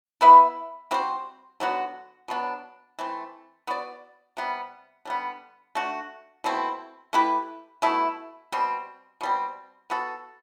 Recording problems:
none

